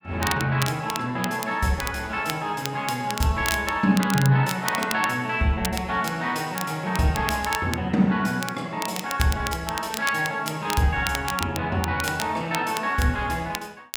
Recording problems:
crackling; vinyl, SNR 10 dB

